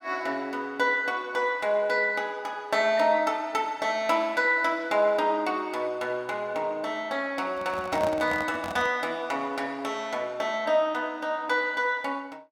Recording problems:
handling noise; from 7.5 to 9 s; peak -4 dB vs average level

